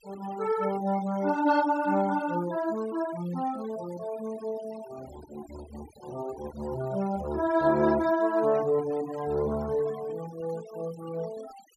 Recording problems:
noise reduction artefacts; signal-to-artefact ratio 18 dB

